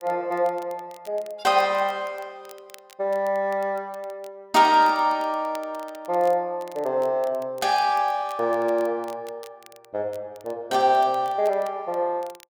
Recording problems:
crackle; vinyl, SNR 27 dB

